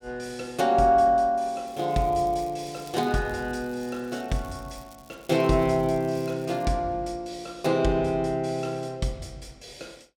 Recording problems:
crackle; from 1.5 to 6.5 s; loose cable, SNR 27 dB

